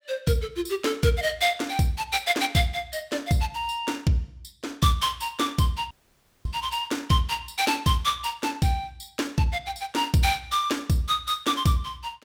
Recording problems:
audio cutting out; at 6 s for 0.5 s

